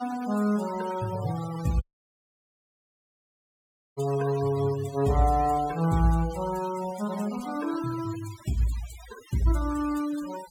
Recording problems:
denoising artefacts; signal-to-artefact ratio 16 dB
dropout; at 2 s for 2 s

